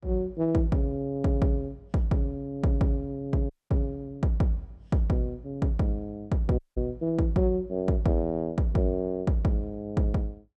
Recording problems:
audio cutting out; at 3.5 s and at 6.5 s

